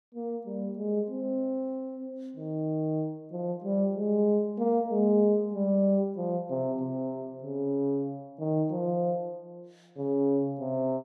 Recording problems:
none

